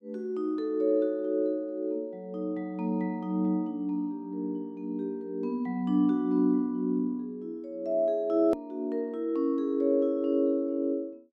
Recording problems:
click at an edit; at 8.5 s

